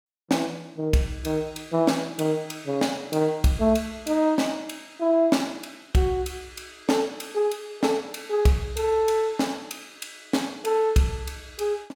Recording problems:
none

